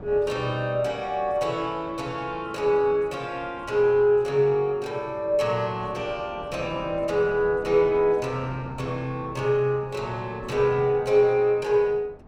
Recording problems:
wind on the microphone; below 510 Hz, SNR 20 dB

